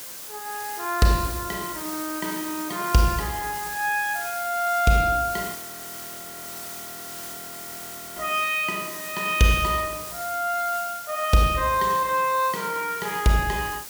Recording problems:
hiss; slope 0 dB per octave, SNR 10 dB
audio freezing; at 5.5 s for 2.5 s

